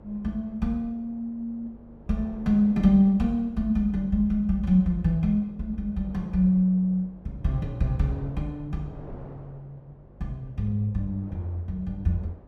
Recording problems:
hum; 50 Hz, harmonics up to 600 Hz, SNR 27 dB
wind on the microphone; below 510 Hz, SNR 23 dB

